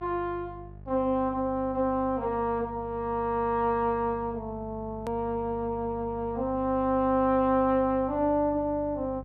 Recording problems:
low-pass filter; nothing above 8 kHz
hum; 50 Hz, harmonics up to 650 Hz, SNR 17 dB
hard cut with a click; at 5 s

